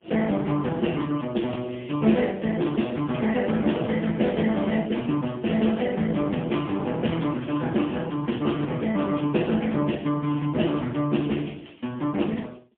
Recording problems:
telephone audio; 130 Hz to 3.4 kHz, AMR-NB, then MP3

